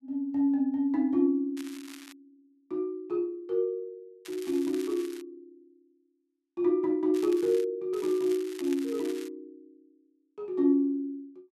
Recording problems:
crackle; 4 times, first at 1.5 s; loose cable, SNR 19 dB

